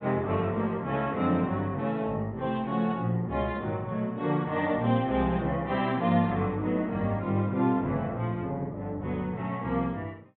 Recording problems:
treble cut off; nothing above 4 kHz

